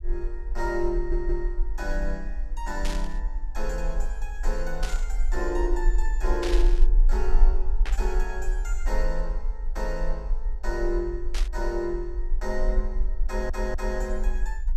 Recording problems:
low-frequency rumble; below 40 Hz, SNR -3 dB
stutter; at 1 s and at 13 s
static burst; 5 times, first at 3 s; peak +3 dB vs average level

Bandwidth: 14 kHz